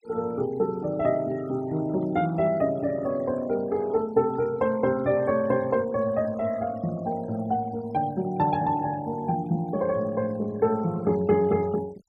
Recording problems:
denoising artefacts; signal-to-artefact ratio 22 dB

